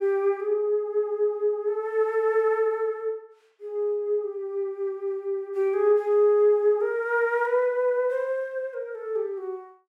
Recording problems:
none

